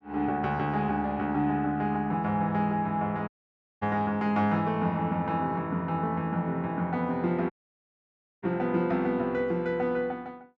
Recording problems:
dropout; at 3.5 s for 0.5 s and at 7.5 s for 1 s

